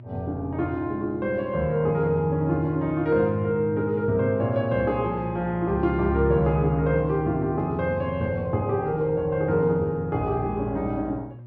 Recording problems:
hum; 60 Hz, harmonics up to 600 Hz, SNR 19 dB

